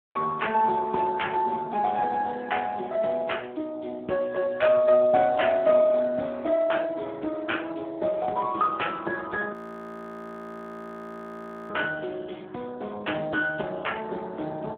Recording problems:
phone line; 220 Hz to 3.3 kHz, Speex
frozen audio; at 9.5 s for 2 s

